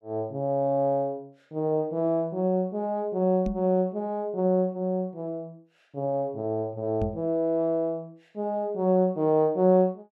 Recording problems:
microphone thump; at 3.5 s and at 7 s; peak 0 dB vs average level

